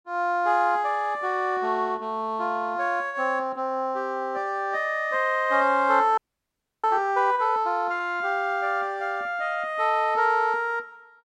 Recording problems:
audio freezing; at 6 s for 0.5 s

